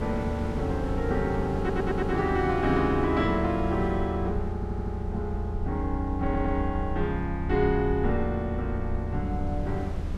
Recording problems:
low-frequency rumble; below 80 Hz, SNR 6 dB
wind noise; below 430 Hz, SNR 11 dB
audio stuttering; at 1.5 s, at 4.5 s and at 6 s

